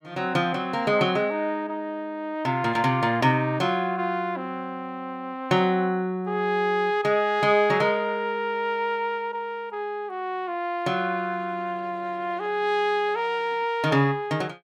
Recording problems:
none

